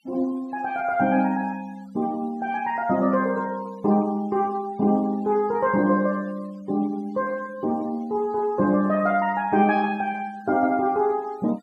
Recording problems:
denoising artefacts; signal-to-artefact ratio 26 dB

